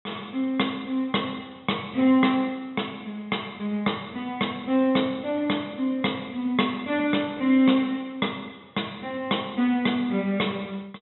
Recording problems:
treble cut off; nothing above 3.8 kHz

